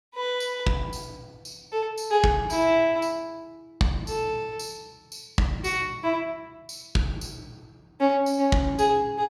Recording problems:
none

